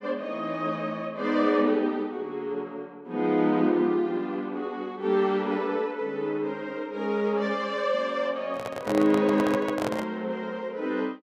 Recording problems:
handling noise; from 8.5 to 10 s; peak -1 dB vs average level

